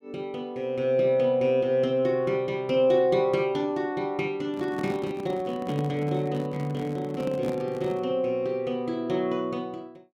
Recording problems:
microphone handling noise; from 4.5 to 8 s; peak -3 dB vs average level

